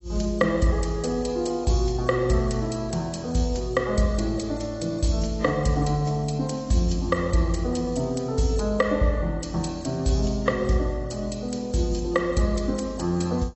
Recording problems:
codec artefacts; AAC, log-spectral distance 5 dB, nothing above 8 kHz

